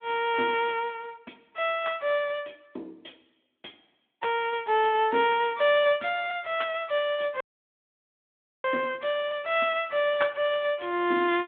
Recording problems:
phone line; 220 Hz to 3.5 kHz, Speex
audio cutting out; at 7.5 s for 1 s

